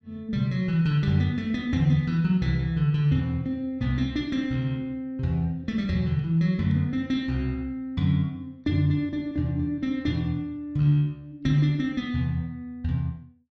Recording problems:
none

